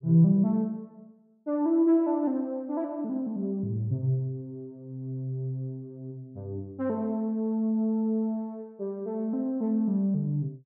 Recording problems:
none

